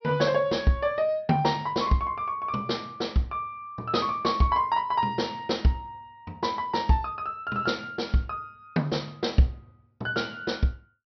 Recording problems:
treble cut off; nothing above 5.8 kHz

